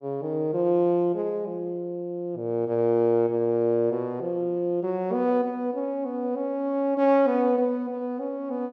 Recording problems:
none

